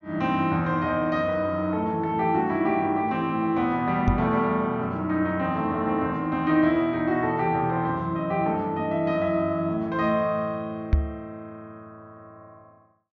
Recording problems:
treble cut off; nothing above 6.7 kHz
microphone thump; at 4 s and at 11 s; peak +7 dB vs average level

